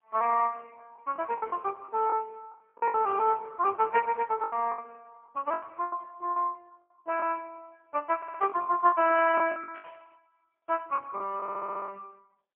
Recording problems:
telephone audio; 280 Hz to 2.2 kHz, AMR-NB, then MP3
lost packets; 10% of the sound replaced, filled with the last packet
static burst; at 1.5 s and at 9.5 s; peak -16 dB vs average level
stutter; at 8 s and at 11 s

